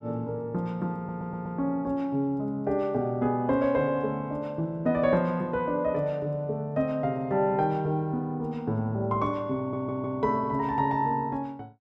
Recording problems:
stutter; at 1 s and at 9.5 s

